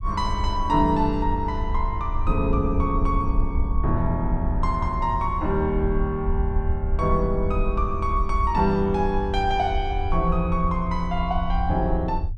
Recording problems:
low-frequency rumble; below 66 Hz, SNR 4 dB

